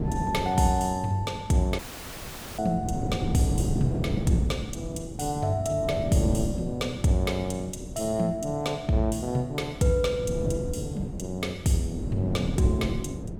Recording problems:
wind on the microphone; below 260 Hz, SNR 5 dB
dropout; at 2 s for 1 s

